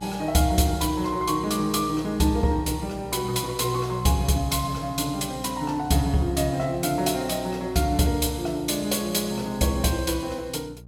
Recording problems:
hum; 60 Hz, harmonics up to 600 Hz, SNR 18 dB

